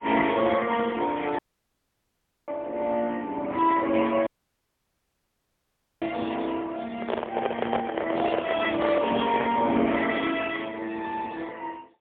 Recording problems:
telephone audio; 280 Hz to 3.3 kHz, AMR-NB, then MP3
audio cutting out; at 1.5 s for 1 s and at 4.5 s for 2 s
handling noise; from 7 to 9.5 s; peak +4 dB vs average level

